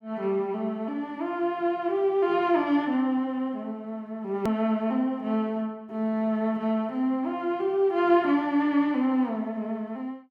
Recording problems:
hard cut with a click; at 4.5 s

